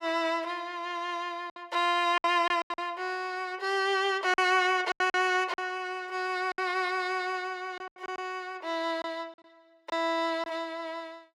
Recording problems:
lost packets; 7% of the sound replaced, filled with silence

